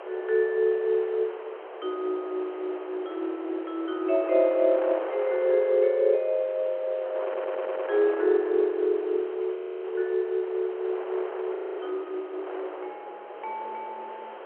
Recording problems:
phone line; 340 Hz to 3.6 kHz, G.711
background hiss; SNR 26 dB
wind noise; below 960 Hz, SNR 12 dB
audio stuttering; at 7.5 s
audio freezing; at 9.5 s and at 12 s

